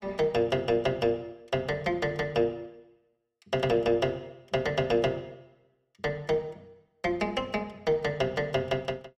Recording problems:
none

